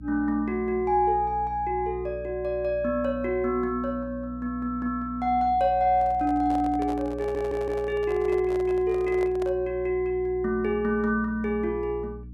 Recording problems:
hum; 60 Hz, harmonics up to 300 Hz, SNR 16 dB
microphone handling noise; from 6 to 9.5 s; peak -8 dB vs average level
stutter; at 7 s

